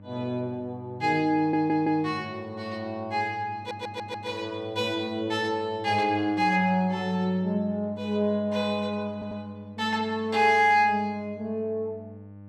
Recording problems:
mains hum; 50 Hz, harmonics up to 900 Hz, SNR 19 dB
audio stuttering; at 1.5 s, at 3.5 s and at 9 s

